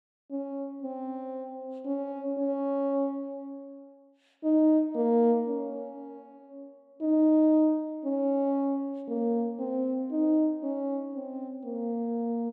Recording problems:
none

